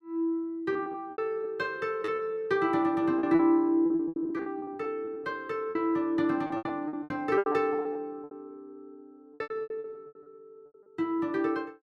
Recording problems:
lost packets; 15% of the sound replaced, filled with repeated pitch periods

